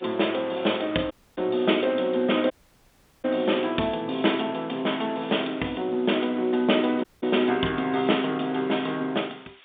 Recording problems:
phone line; 220 Hz to 3.7 kHz, G.711
background hiss; SNR 27 dB
dropout; at 1 s, at 2.5 s for 0.5 s and at 7 s

